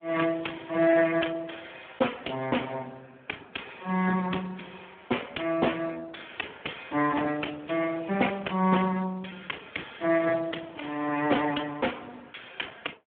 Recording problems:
telephone audio; 260 Hz to 3.3 kHz, Speex

